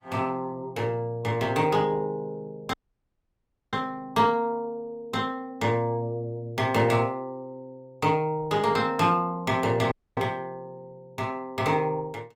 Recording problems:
codec artefacts; Opus, log-spectral distance 2 dB, nothing above 19.5 kHz
audio cutting out; at 2.5 s for 1 s and at 10 s

